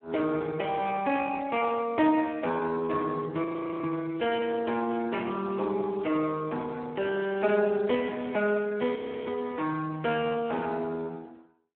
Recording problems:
phone line; 240 Hz to 3.4 kHz, Speex
audio freezing; at 3.5 s and at 9 s

